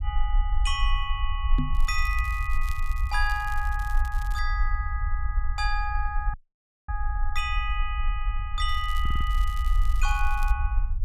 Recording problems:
rumble; below 52 Hz, SNR -2 dB
microphone thump; at 1.5 s; peak +6 dB vs average level
crackling; from 2 to 4.5 s and from 8.5 to 11 s; loose cable, SNR 18 dB
audio cutting out; at 6.5 s for 0.5 s
audio stuttering; at 9 s

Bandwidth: 15 kHz